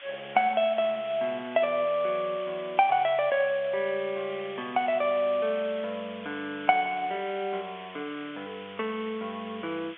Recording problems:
phone line; 260 Hz to 3.5 kHz, G.711
hiss; SNR 17 dB

